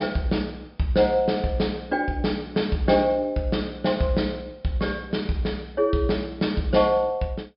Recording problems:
treble missing; nothing above 5.5 kHz

